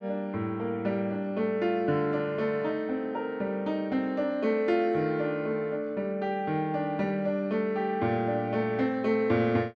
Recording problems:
none

